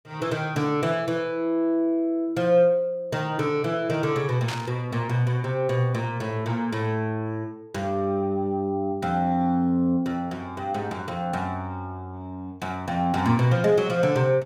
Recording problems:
burst of static; at 4.5 s; peak -3 dB vs average level

